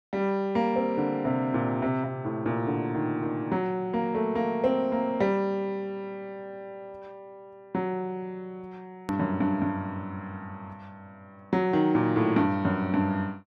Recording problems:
hard cut with a click; at 9 s

